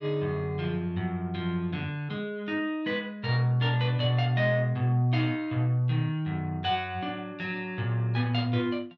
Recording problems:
none

